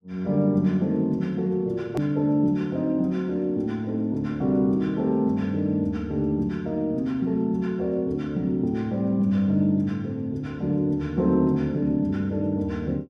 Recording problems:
edit click; at 2 s

